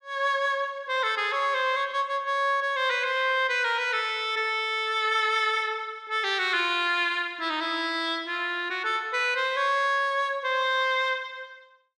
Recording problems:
none

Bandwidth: 13 kHz